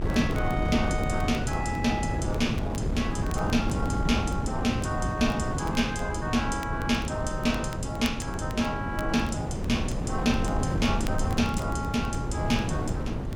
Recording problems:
wind noise; below 280 Hz, SNR 1 dB
crackle; vinyl, SNR 20 dB

